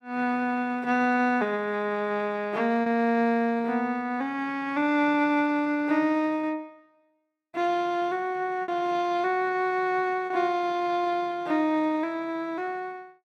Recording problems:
packet loss; 1.8% of the sound replaced, filled with repeated pitch periods

